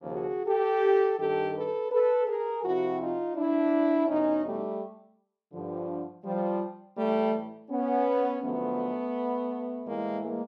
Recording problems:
none

